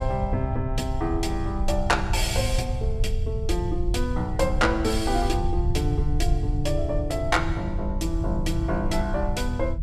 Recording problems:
low-frequency rumble; below 84 Hz, SNR 2 dB

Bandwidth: 14.5 kHz